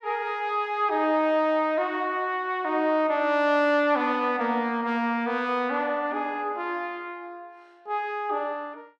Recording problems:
none

